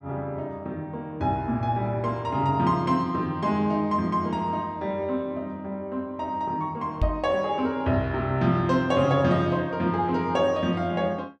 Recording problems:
microphone thump; at 7 s; peak +4 dB vs average level

